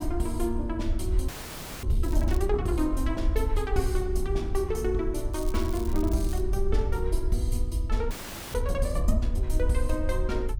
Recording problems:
low-frequency rumble; below 64 Hz, SNR 0 dB
audio freezing; at 1.5 s for 0.5 s and at 8 s
crackle; at 2 s and from 5.5 to 6.5 s; loose cable, SNR 15 dB

